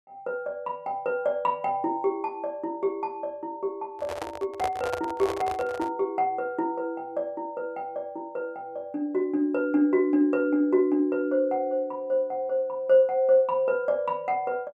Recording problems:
handling noise; from 4 to 6 s; peak 0 dB vs average level

